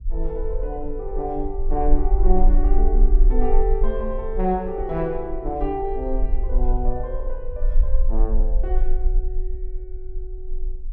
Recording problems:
low-frequency rumble; below 38 Hz, strongest tone 18 Hz, SNR -2 dB

